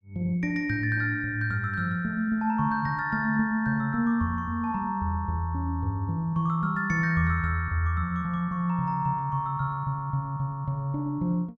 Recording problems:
none

